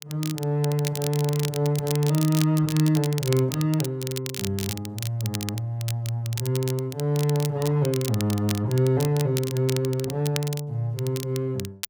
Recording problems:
crackle; vinyl, SNR 10 dB

